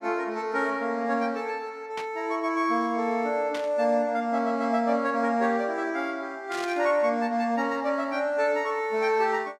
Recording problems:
burst of static; at 2 s, at 3.5 s and at 6.5 s; peak -7 dB vs average level

